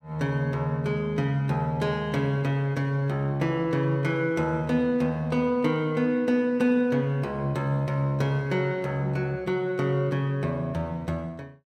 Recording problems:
none

